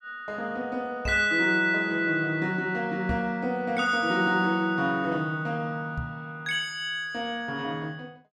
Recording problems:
microphone bump; at 1 s, at 3 s and at 6 s; peak -2 dB vs average level

